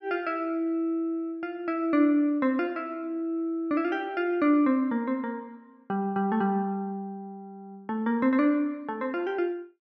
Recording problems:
none

